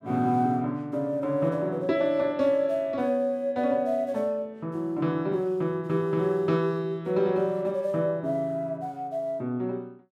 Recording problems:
none

